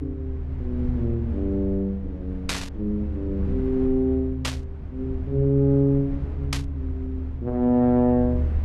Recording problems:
low-frequency rumble; below 78 Hz, strongest tone 74 Hz, SNR 7 dB
burst of static; at 2.5 s, at 4.5 s and at 6.5 s; peak +2 dB vs average level

